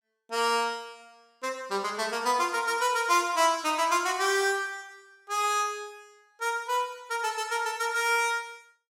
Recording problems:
none

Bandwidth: 16 kHz